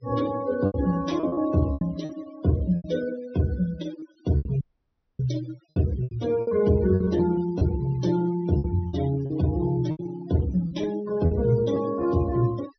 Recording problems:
treble missing; nothing above 6 kHz
denoising artefacts; signal-to-artefact ratio 18 dB
packet loss; 10% of the sound replaced, filled with repeated pitch periods
dropout; at 4.5 s for 0.5 s

